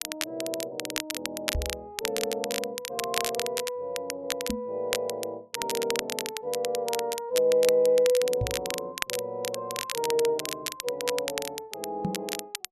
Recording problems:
crackling; vinyl, SNR 4 dB
microphone thump; 4 times, first at 1.5 s; peak +4 dB vs average level

